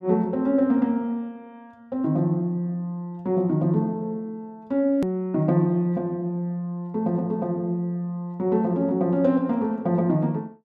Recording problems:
hard cut with a click; at 5 s

